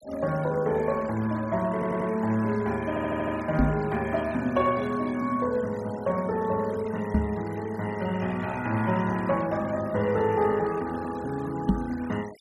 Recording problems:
denoising artefacts; signal-to-artefact ratio 20 dB
audio stuttering; at 1.5 s and at 3 s
microphone thump; at 3.5 s, at 7 s and at 12 s; peak +8 dB vs average level

